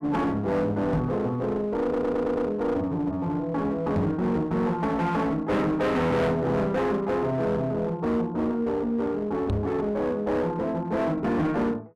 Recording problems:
distortion; hard clipping, uneven, signal-to-distortion ratio 7 dB
knock on the microphone; at 1 s, at 4 s and at 9.5 s; peak +4 dB vs average level
audio stuttering; at 2 s

